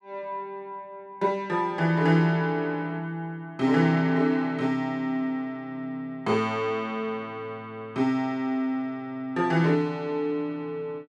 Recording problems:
none

